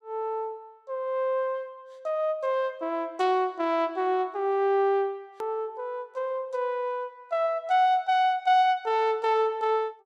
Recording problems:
hard cut with a click; at 5.5 s

